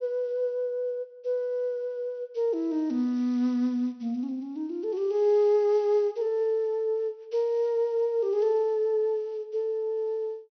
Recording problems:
low-pass filter; nothing above 6 kHz

